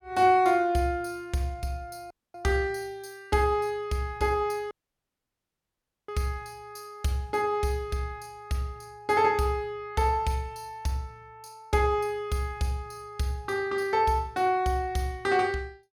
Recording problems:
dropout; at 2 s and at 4.5 s for 1.5 s

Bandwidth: 17.5 kHz